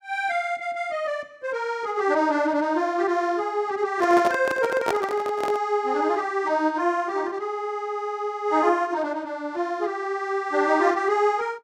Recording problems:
handling noise; from 4 to 5.5 s; peak +2 dB vs average level

